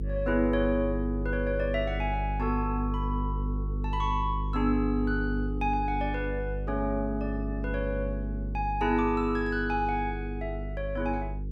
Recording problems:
electrical hum; 50 Hz, harmonics up to 450 Hz, SNR 4 dB

